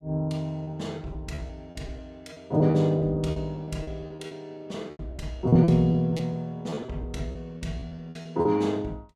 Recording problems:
packet loss; 13% of the sound replaced, filled with repeated pitch periods

